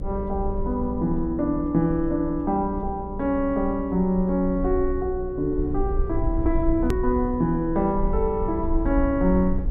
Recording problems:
electrical hum; 60 Hz, harmonics up to 540 Hz, SNR 14 dB
low-frequency rumble; below 54 Hz, strongest tone 22 Hz, SNR 9 dB
edit click; at 7 s

